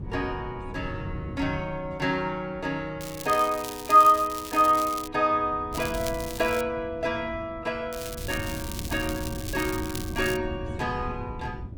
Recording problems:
wind on the microphone; below 170 Hz, SNR 13 dB
crackle; from 3 to 5 s, at 5.5 s and from 8 to 10 s; loose cable, SNR 12 dB

